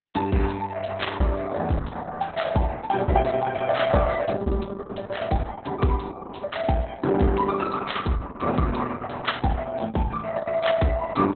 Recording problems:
lossy compression; Opus, log-spectral distance 5 dB, nothing above 4 kHz
packet loss; 7% of the sound replaced, filled with the last packet

